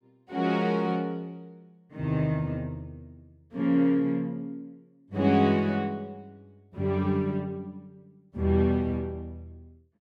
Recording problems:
none

